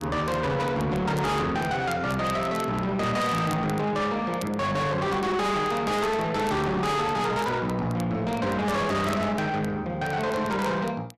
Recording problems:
distortion; soft clipping, signal-to-distortion ratio 6 dB
crackle; vinyl, SNR 22 dB

